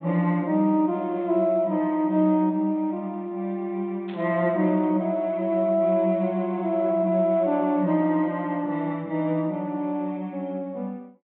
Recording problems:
low-pass filter; nothing above 4 kHz
static burst; at 4 s; peak -16 dB vs average level

